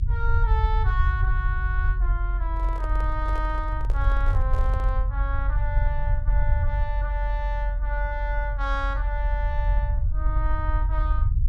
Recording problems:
low-frequency rumble; below 60 Hz, strongest tone 44 Hz, SNR -7 dB
microphone handling noise; from 2.5 to 5 s; peak -4 dB vs average level

